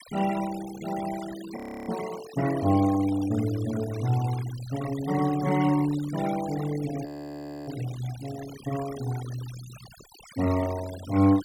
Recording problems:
noise reduction artefacts; signal-to-artefact ratio 15 dB
frozen audio; at 1.5 s and at 7 s for 0.5 s

